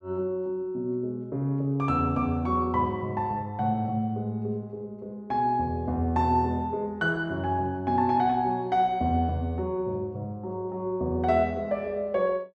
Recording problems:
none

